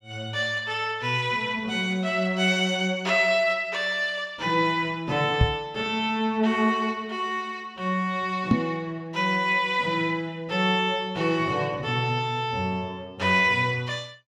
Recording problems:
microphone bump; at 5.5 s and at 8.5 s; peak +8 dB vs average level

